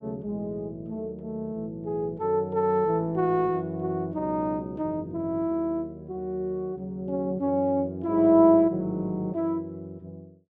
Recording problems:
none

